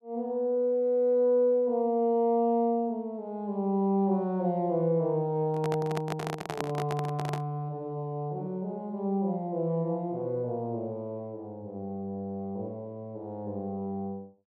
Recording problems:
microphone handling noise; from 5.5 to 7.5 s; peak 0 dB vs average level

